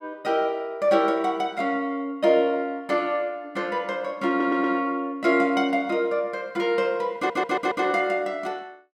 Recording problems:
audio stuttering; at 4.5 s and at 7 s

